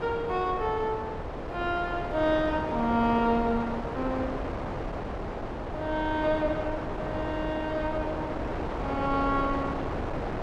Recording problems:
wind on the microphone; below 840 Hz, SNR 4 dB

